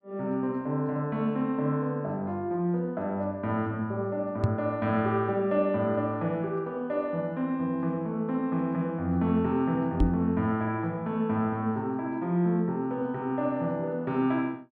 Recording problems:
microphone bump; at 4.5 s and at 10 s; peak +7 dB vs average level

